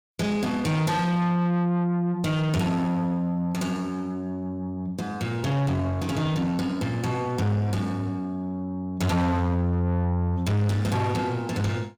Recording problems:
distortion; soft clipping, signal-to-distortion ratio 8 dB

